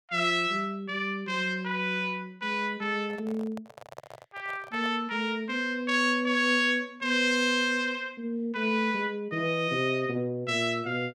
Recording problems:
microphone handling noise; from 3 to 5 s; peak -11 dB vs average level

